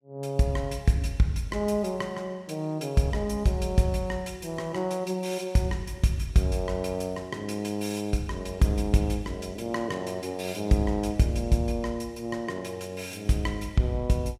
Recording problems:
none

